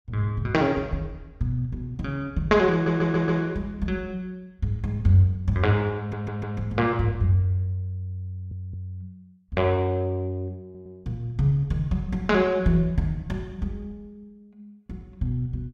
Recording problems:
stutter; 4 times, first at 2.5 s

